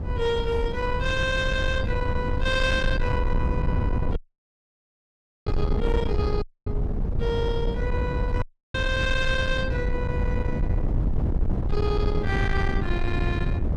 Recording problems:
distortion; soft clipping, signal-to-distortion ratio 11 dB
rumble; below 130 Hz, SNR 0 dB
audio cutting out; at 4 s for 1.5 s, at 6.5 s and at 8.5 s

